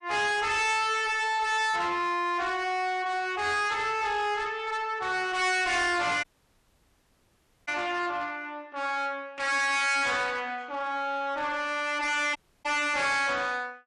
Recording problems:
lossy codec; MP3, log-spectral distance 2 dB, nothing above 9.2 kHz
distortion; soft clipping, signal-to-distortion ratio 6 dB
audio cutting out; at 6 s for 1.5 s and at 12 s

